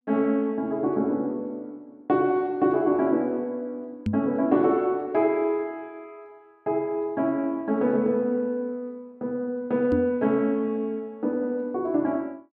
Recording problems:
microphone bump; at 4 s and at 10 s; peak +2 dB vs average level

